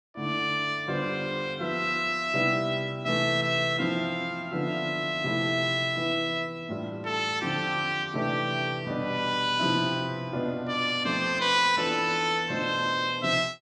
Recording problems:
none

